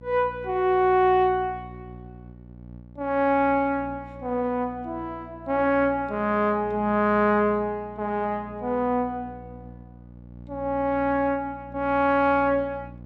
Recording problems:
electrical hum; 60 Hz, harmonics up to 840 Hz, SNR 19 dB

